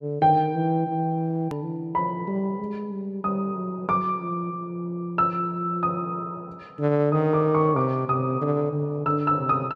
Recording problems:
hard cut with a click; at 1.5 s

